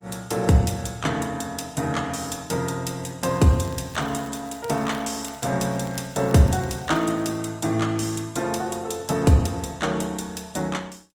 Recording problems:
lossy codec; Opus, log-spectral distance 5 dB
crackle; from 3.5 to 5.5 s and from 5.5 to 7.5 s; loose cable, SNR 24 dB

